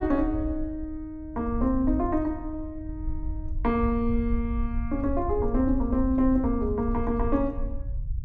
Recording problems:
low-frequency rumble; below 68 Hz, SNR 7 dB

